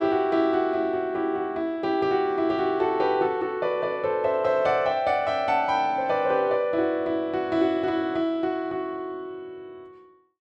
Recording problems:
none

